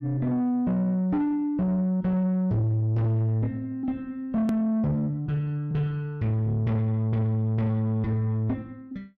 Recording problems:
distorted audio; soft clipping, signal-to-distortion ratio 10 dB
click at an edit; at 4.5 s

